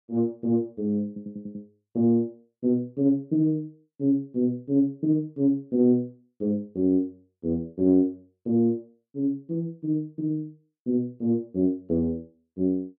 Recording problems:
audio stuttering; at 1 s

